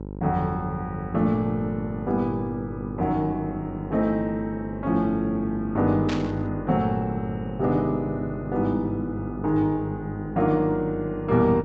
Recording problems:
low-pass filter; nothing above 8 kHz
hum; 50 Hz, harmonics up to 1 kHz, SNR 10 dB
static burst; at 6 s; peak -4 dB vs average level

